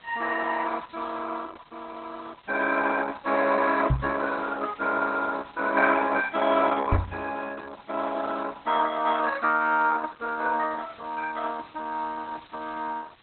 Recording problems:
lossy compression; Opus, log-spectral distance 13 dB
hiss; SNR 27 dB
knock on the microphone; at 4 s and at 7 s; peak +5 dB vs average level

